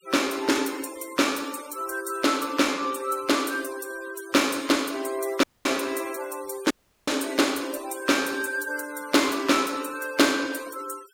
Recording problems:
denoising artefacts; signal-to-artefact ratio 18 dB
audio cutting out; at 5.5 s and at 6.5 s

